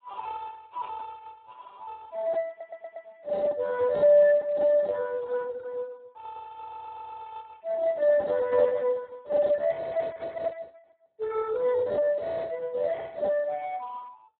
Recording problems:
phone line; 990 Hz to 2 kHz, Speex
stutter; at 2.5 s and at 6.5 s

